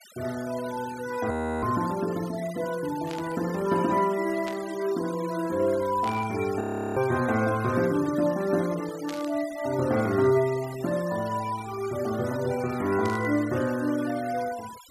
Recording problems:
noise reduction artefacts; signal-to-artefact ratio 17 dB
frozen audio; at 1.5 s and at 6.5 s
static burst; 5 times, first at 3 s; peak -8 dB vs average level

